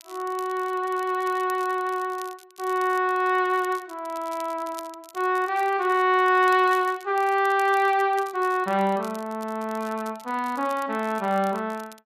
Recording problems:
crackling; vinyl, SNR 23 dB

